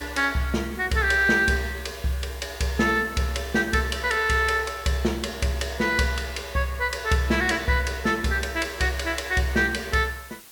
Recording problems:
background hiss; slope +1 dB per octave, SNR 21 dB

